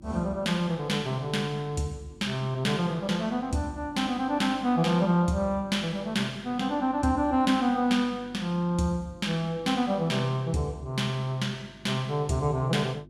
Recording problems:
hum; 50 Hz, harmonics up to 350 Hz, SNR 23 dB

